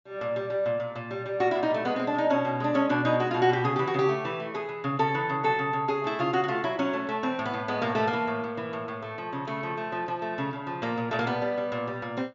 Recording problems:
low-pass filter; nothing above 7.3 kHz

